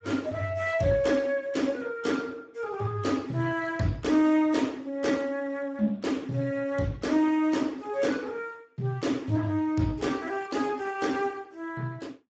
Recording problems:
lossy codec; Speex, log-spectral distance 3 dB, nothing above 7.6 kHz

